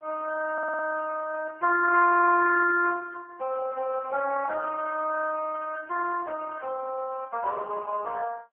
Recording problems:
phone line; 320 Hz to 2.4 kHz, AMR-NB
audio stuttering; at 0.5 s

